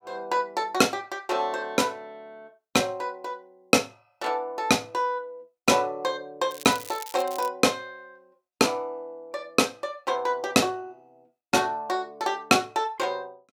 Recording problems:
crackling; at 6.5 s; loose cable, SNR 15 dB

